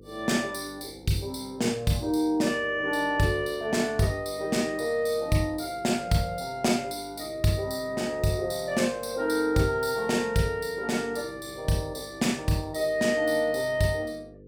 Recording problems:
hum; 50 Hz, harmonics up to 500 Hz, SNR 23 dB

